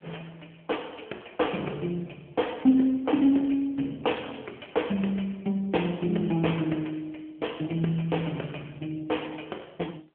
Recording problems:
telephone audio; 240 Hz to 3.3 kHz, AMR-NB

